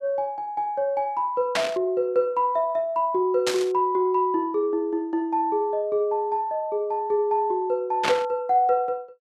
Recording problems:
static burst; at 1.5 s, at 3.5 s and at 8 s; peak +3 dB vs average level

